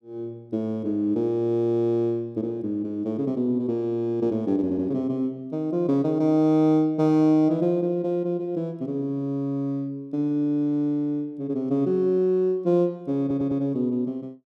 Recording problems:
audio stuttering; at 4.5 s and at 13 s

